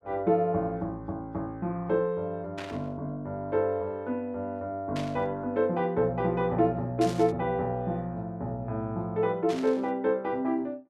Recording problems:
static burst; 4 times, first at 2.5 s; peak -6 dB vs average level

